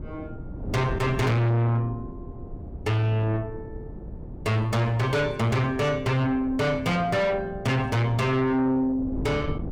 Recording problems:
distortion; soft clipping, signal-to-distortion ratio 6 dB
wind noise; below 280 Hz, SNR 13 dB

